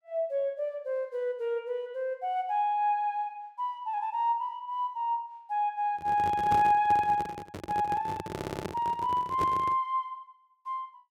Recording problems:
microphone handling noise; from 6 to 10 s; peak -2 dB vs average level
audio stuttering; at 8.5 s

